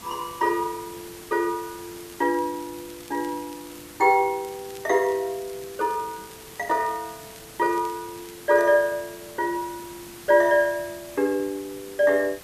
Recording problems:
hiss; slope -2 dB per octave, SNR 18 dB
crackle; from 2 to 4 s and from 4.5 to 8.5 s; loose cable, SNR 26 dB

